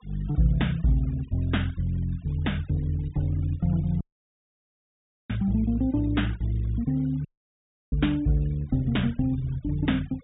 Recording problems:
treble missing; nothing above 4 kHz
denoising artefacts; signal-to-artefact ratio 26 dB
dropout; at 4 s for 1.5 s and at 7.5 s for 0.5 s

